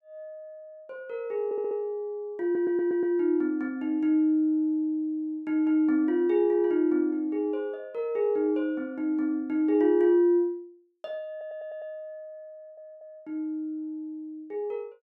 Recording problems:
stutter; 4 times, first at 1.5 s

